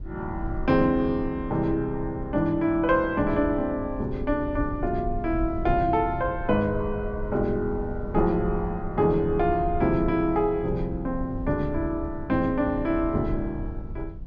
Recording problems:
low-pass filter; nothing above 6.7 kHz
low-frequency rumble; below 86 Hz, SNR 11 dB

